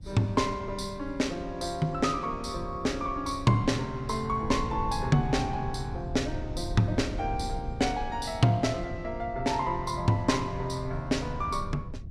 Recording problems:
rumble; below 100 Hz, SNR 11 dB

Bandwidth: 15 kHz